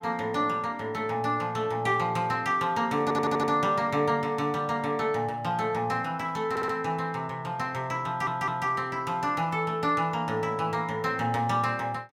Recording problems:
stutter; at 3 s, at 6.5 s and at 8 s

